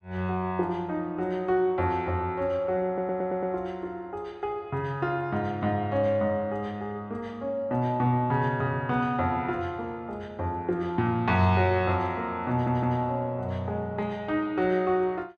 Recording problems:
audio stuttering; at 3 s and at 13 s

